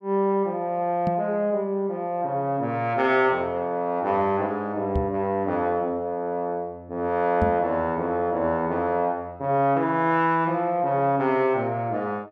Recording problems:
microphone thump; at 1 s, at 5 s and at 7.5 s; peak +3 dB vs average level

